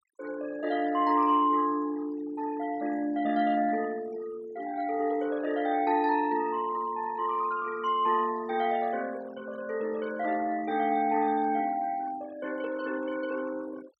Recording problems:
noise reduction artefacts; signal-to-artefact ratio 20 dB

